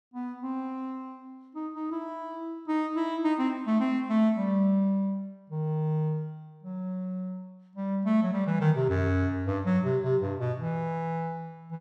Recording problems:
none

